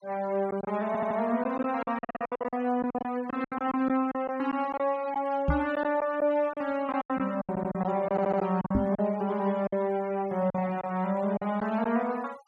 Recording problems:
noise reduction artefacts; signal-to-artefact ratio 24 dB
lost packets; 11% of the sound replaced, filled with silence
stutter; 4 times, first at 1 s
knock on the microphone; at 5.5 s and at 9 s; peak +5 dB vs average level

